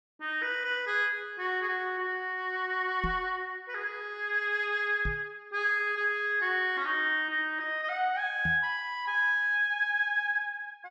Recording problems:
knock on the microphone; at 3 s, at 5 s and at 8.5 s; peak -2 dB vs average level

